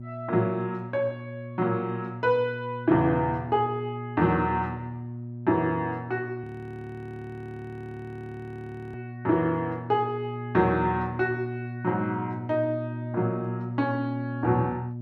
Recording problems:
hum; 60 Hz, harmonics up to 600 Hz, SNR 9 dB
audio freezing; at 6.5 s for 2.5 s

